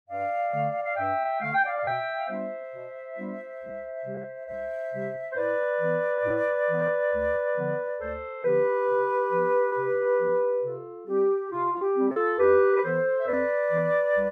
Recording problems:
packet loss; 4% of the sound replaced, filled with repeated pitch periods

